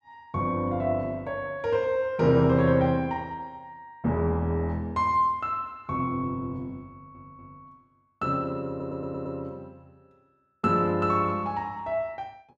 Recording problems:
audio stuttering; at 7 s and at 8.5 s

